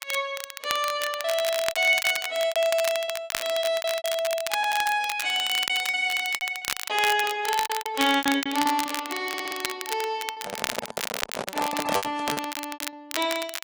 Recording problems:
lossy compression; AAC, log-spectral distance 2 dB
crackling; vinyl, SNR 7 dB
packet loss; 16% of the sound replaced, filled with repeated pitch periods
audio stuttering; at 4.5 s and at 9.5 s
microphone handling noise; from 10 to 12 s; peak +3 dB vs average level

